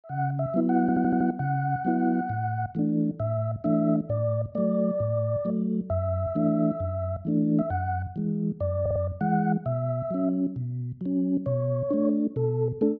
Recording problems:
stutter; at 1 s and at 9 s

